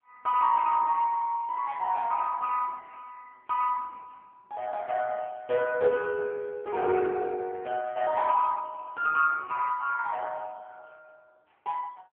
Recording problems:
phone line; 300 Hz to 2 kHz, AMR-NB

